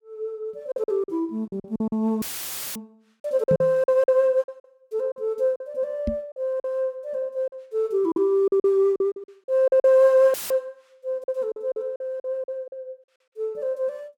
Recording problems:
packet loss; 11% of the sound replaced, filled with silence
dropout; at 2 s for 0.5 s and at 10 s; filled with static
knock on the microphone; at 3.5 s and at 6 s; peak +1 dB vs average level

